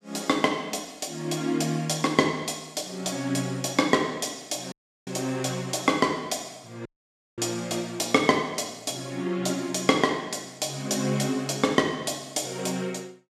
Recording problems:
dropout; at 4.5 s and at 7 s for 0.5 s

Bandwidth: 14.5 kHz